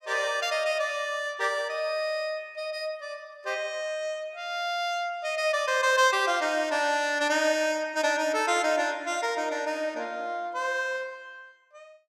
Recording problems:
none

